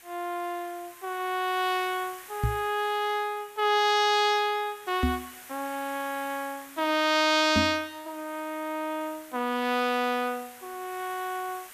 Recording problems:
background hiss; SNR 19 dB
microphone thump; at 2.5 s, at 5 s and at 7.5 s; peak +5 dB vs average level

